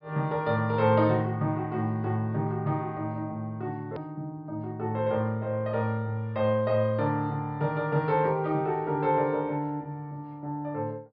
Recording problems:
low-pass filter; nothing above 5.5 kHz
edit click; at 4 s

